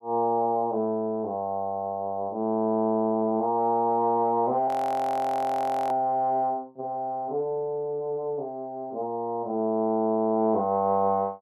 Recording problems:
frozen audio; at 4.5 s for 1 s

